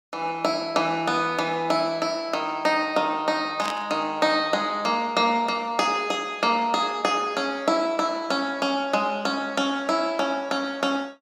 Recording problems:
burst of static; at 3.5 s; peak -5 dB vs average level

